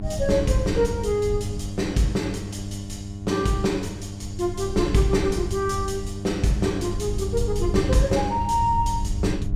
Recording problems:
mains hum; 50 Hz, harmonics up to 800 Hz, SNR 10 dB
wind noise; below 94 Hz, SNR 8 dB

